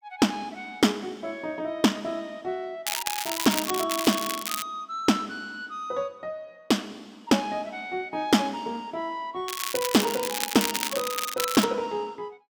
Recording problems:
crackle; from 3 to 4.5 s and from 9.5 to 12 s; loose cable, SNR 2 dB

